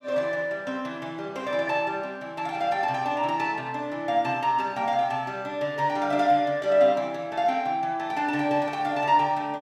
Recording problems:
none

